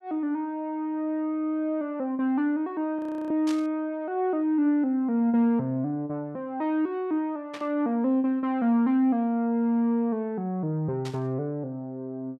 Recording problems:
audio freezing; at 3 s
static burst; at 3.5 s, at 7.5 s and at 11 s; peak -8 dB vs average level

